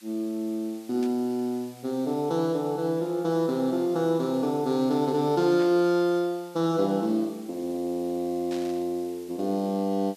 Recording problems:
background hiss; slope +3 dB per octave, SNR 25 dB
burst of static; at 1 s, at 5.5 s and at 8.5 s; peak -12 dB vs average level

